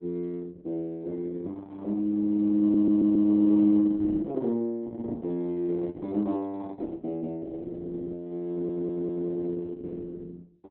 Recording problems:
lossy codec; Opus, log-spectral distance 2 dB, nothing above 4 kHz
audio stuttering; at 2.5 s and at 8.5 s

